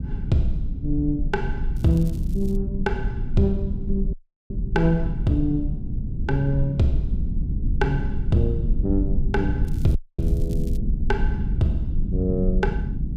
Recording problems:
low-frequency rumble; below 84 Hz, SNR 2 dB
crackling; at 2 s and from 9.5 to 11 s; loose cable, SNR 26 dB
audio cutting out; at 4 s and at 10 s

